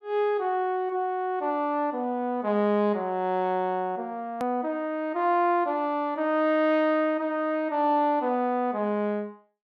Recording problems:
edit click; at 4.5 s

